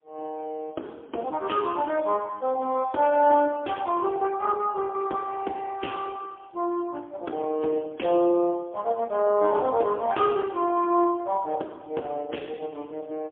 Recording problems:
phone line; 280 Hz to 3.3 kHz, AMR-NB, then MP3

